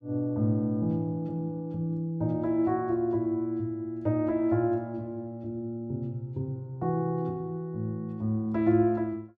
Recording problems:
none

